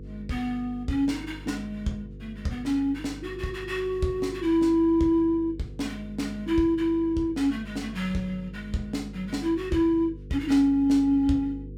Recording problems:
electrical hum; 50 Hz, harmonics up to 500 Hz, SNR 16 dB

